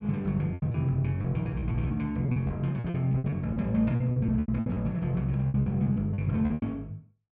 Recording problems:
packet loss; 15% of the sound replaced, filled with repeated pitch periods

